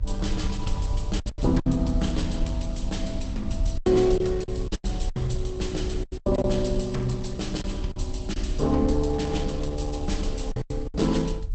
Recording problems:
lossy codec; Opus, log-spectral distance 4 dB, nothing above 8.2 kHz
rumble; below 68 Hz, SNR 5 dB
lost packets; 9% of the sound replaced, filled with silence

